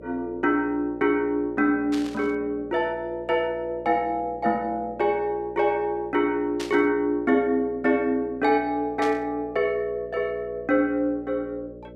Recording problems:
hum; 60 Hz, harmonics up to 600 Hz, SNR 19 dB
burst of static; at 2 s, at 6.5 s and at 9 s; peak -6 dB vs average level

